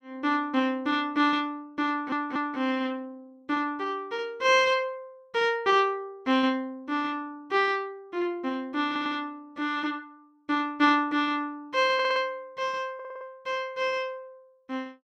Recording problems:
stutter; 4 times, first at 2 s

